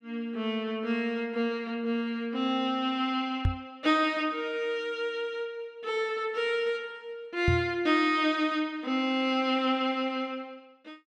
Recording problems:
knock on the microphone; at 3.5 s and at 7.5 s; peak +6 dB vs average level

